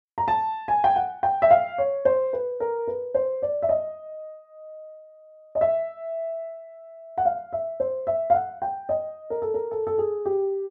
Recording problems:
none

